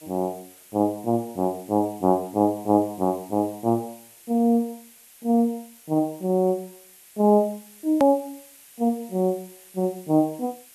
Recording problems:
background hiss; slope +1 dB per octave, SNR 23 dB
click at an edit; at 8 s

